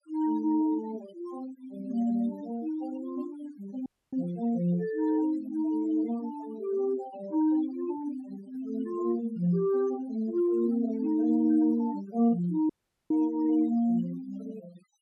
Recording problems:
denoising artefacts; signal-to-artefact ratio 18 dB
audio cutting out; at 4 s and at 13 s

